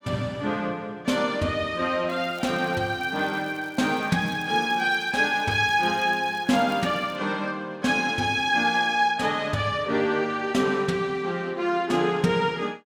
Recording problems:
crackle; from 2 to 7 s; loose cable, SNR 27 dB

